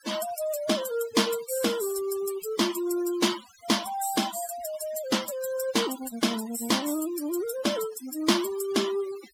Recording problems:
denoising artefacts; signal-to-artefact ratio 12 dB

